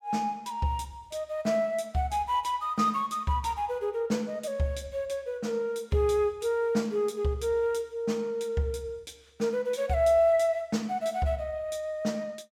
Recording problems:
none

